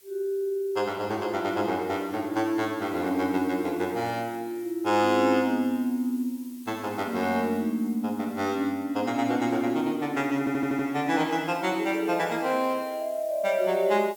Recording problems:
background hiss; SNR 24 dB
stutter; at 10 s

